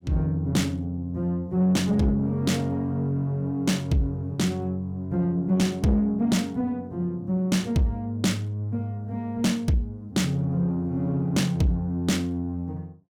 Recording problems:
distorted audio; soft clipping, signal-to-distortion ratio 11 dB

